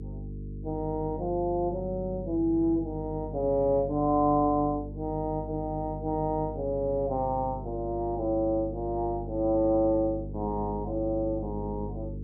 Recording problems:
hum; 50 Hz, harmonics up to 450 Hz, SNR 10 dB

